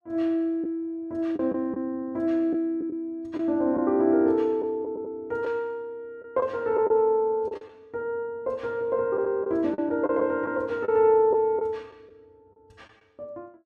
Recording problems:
packet loss; 5% of the sound replaced, filled with the last packet

